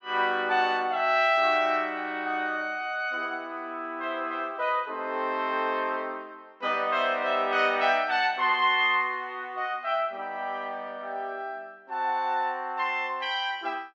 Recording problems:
none

